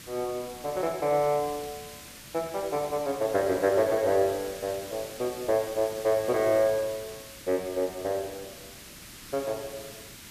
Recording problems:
background hiss; SNR 14 dB

